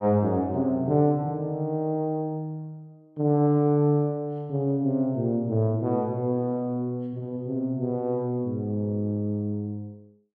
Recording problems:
none

